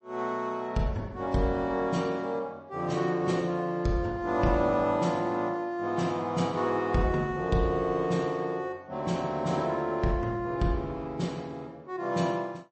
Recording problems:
codec artefacts; MP3, log-spectral distance 2 dB, nothing above 8.2 kHz

